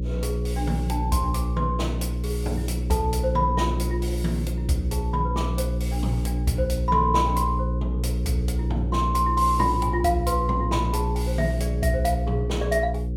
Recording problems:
hum; 60 Hz, harmonics up to 540 Hz, SNR 0 dB

